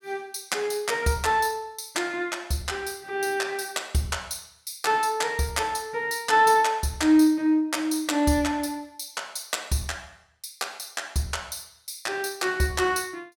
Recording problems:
none

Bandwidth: 17 kHz